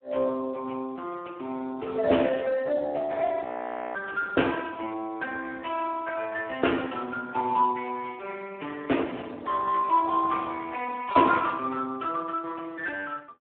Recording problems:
telephone audio; 260 Hz to 2.2 kHz, Speex
audio freezing; at 3.5 s for 0.5 s

